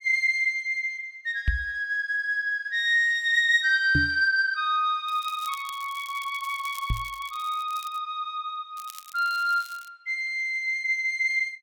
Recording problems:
microphone bump; at 1.5 s, at 4 s and at 7 s; peak +3 dB vs average level
crackling; from 5 to 8 s and from 9 to 10 s; loose cable, SNR 20 dB

